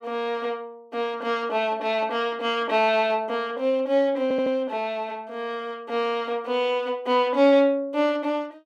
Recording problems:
stutter; at 4 s

